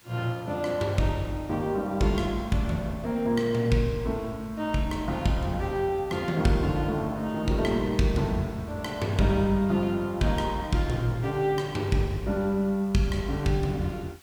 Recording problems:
background hiss; slope -1 dB per octave, SNR 27 dB

